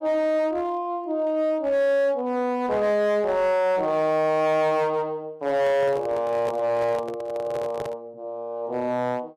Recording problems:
distortion; hard clipping, uneven, signal-to-distortion ratio 11 dB
handling noise; from 5.5 to 8 s; peak -6 dB vs average level

